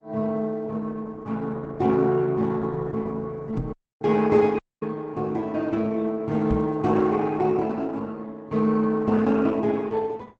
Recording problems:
lossy compression; Opus, log-spectral distance 3 dB, nothing above 7.8 kHz
microphone bump; at 3.5 s and at 6.5 s; peak 0 dB vs average level
dropout; at 3.5 s and at 4.5 s

